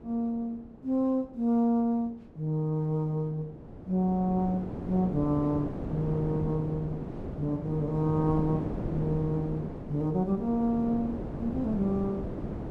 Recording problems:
wind noise; below 400 Hz, SNR 7 dB

